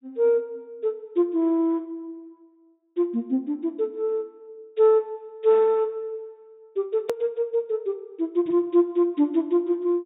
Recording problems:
low-pass filter; nothing above 4 kHz
click at an edit; at 7 s

